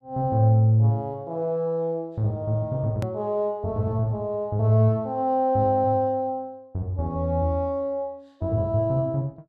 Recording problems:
hard cut with a click; at 3 s

